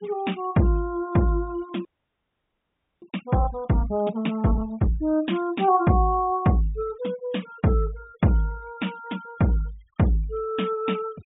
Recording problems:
low-pass filter; nothing above 4 kHz
denoising artefacts; signal-to-artefact ratio 24 dB
audio freezing; at 2 s for 1 s

